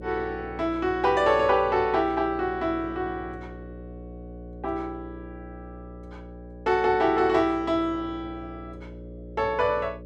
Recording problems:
hum; 60 Hz, harmonics up to 600 Hz, SNR 16 dB

